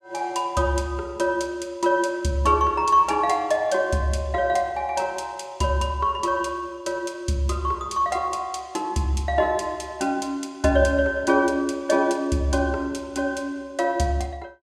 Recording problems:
none

